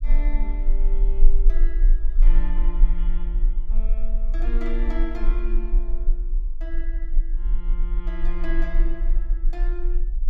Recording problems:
rumble; below 32 Hz, strongest tone 20 Hz, SNR -12 dB

